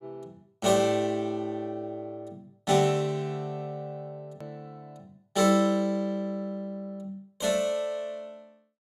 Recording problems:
edit click; at 4.5 s

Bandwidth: 14.5 kHz